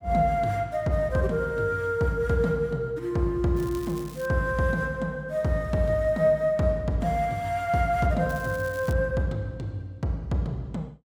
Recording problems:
crackle; at 3.5 s and at 8.5 s; loose cable, SNR 21 dB

